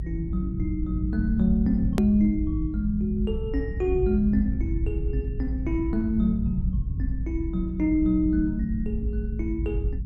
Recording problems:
low-frequency rumble; below 98 Hz, SNR 3 dB
edit click; at 2 s

